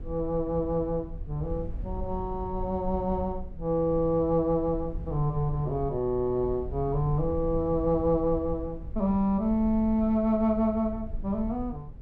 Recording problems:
rumble; below 80 Hz, SNR 12 dB

